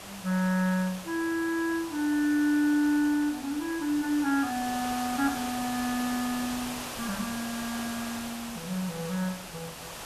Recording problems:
background hiss; slope -2 dB per octave, SNR 9 dB

